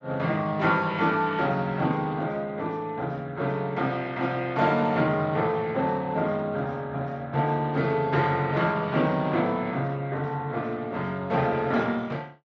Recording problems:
lossy compression; Speex, log-spectral distance 2 dB

